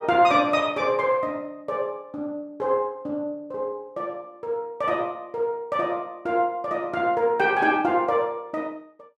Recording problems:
none

